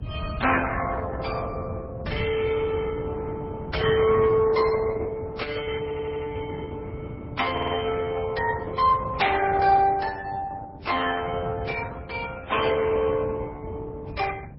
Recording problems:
codec artefacts; Opus, then MP3, log-spectral distance 3 dB, nothing above 5.3 kHz
wind on the microphone; below 140 Hz, SNR 9 dB
stutter; at 6 s and at 7.5 s

